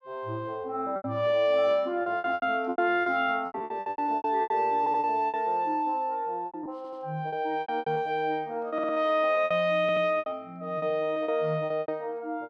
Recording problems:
packet loss; 15% of the sound replaced, filled with repeated pitch periods
audio stuttering; 4 times, first at 5 s

